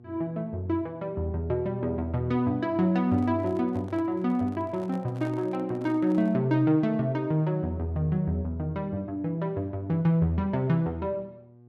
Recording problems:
hum; 60 Hz, harmonics up to 840 Hz, SNR 25 dB
microphone handling noise; from 3 to 6.5 s; peak -12 dB vs average level

